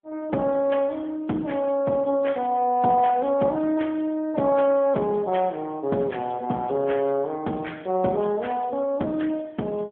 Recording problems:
telephone audio; 130 Hz to 3.4 kHz, AMR-NB

